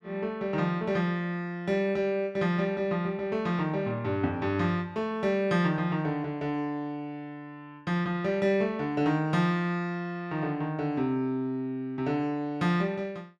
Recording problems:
none

